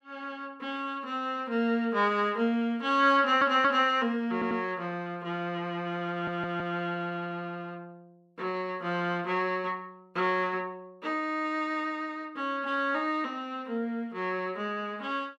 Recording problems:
stutter; at 3 s, at 4.5 s and at 6 s

